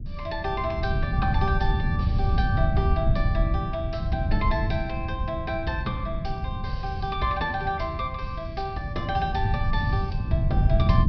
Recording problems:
treble cut off; nothing above 5.5 kHz
rumble; below 120 Hz, SNR -2 dB

